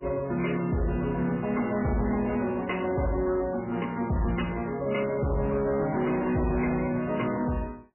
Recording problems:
codec artefacts; MP3, log-spectral distance 6 dB, nothing above 2.5 kHz
distortion; hard clipping, signal-to-distortion ratio 10 dB

